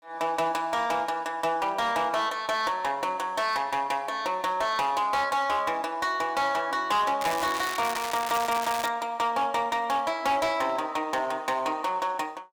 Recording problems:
distortion; hard clipping, signal-to-distortion ratio 11 dB
crackle; from 7 to 9 s; loose cable, SNR 8 dB

